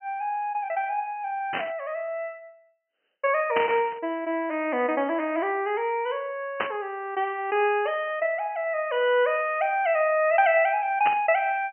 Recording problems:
treble cut off; nothing above 3.1 kHz
static burst; 4 times, first at 1.5 s; peak +2 dB vs average level

